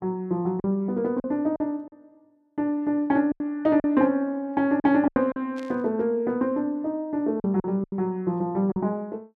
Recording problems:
lost packets; 7% of the sound replaced, filled with silence
static burst; at 5.5 s; peak -16 dB vs average level

